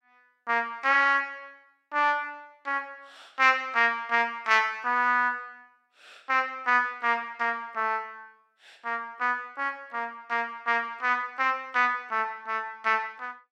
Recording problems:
none

